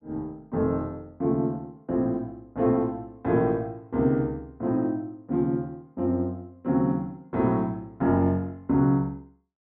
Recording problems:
none

